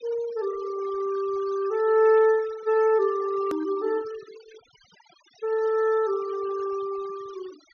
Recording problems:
low-pass filter; nothing above 6.5 kHz
denoising artefacts; signal-to-artefact ratio 22 dB
hard cut with a click; at 3.5 s

